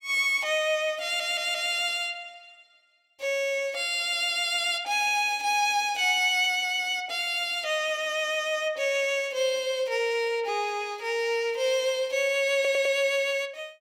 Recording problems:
audio stuttering; at 1 s and at 13 s

